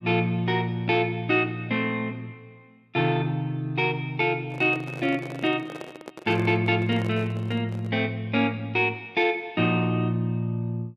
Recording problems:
microphone handling noise; from 4.5 to 8 s; peak -8 dB vs average level

